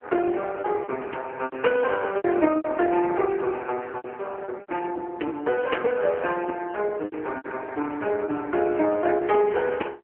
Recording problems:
telephone audio; 280 Hz to 3 kHz, AMR-NB
lost packets; 8% of the sound replaced, filled with repeated pitch periods

